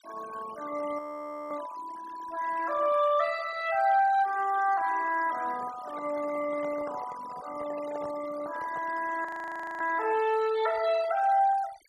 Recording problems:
noise reduction artefacts; signal-to-artefact ratio 18 dB
audio freezing; at 1 s for 0.5 s and at 9.5 s for 0.5 s
handling noise; from 5.5 to 9 s; peak -11 dB vs average level

